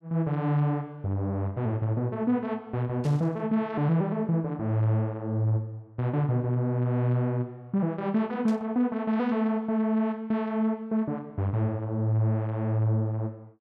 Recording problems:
static burst; at 3 s and at 8.5 s; peak -14 dB vs average level

